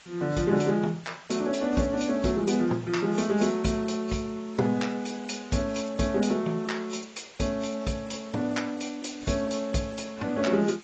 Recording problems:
lossy compression; AAC, log-spectral distance 8 dB, nothing above 7.3 kHz
background hiss; slope 0 dB per octave, SNR 22 dB

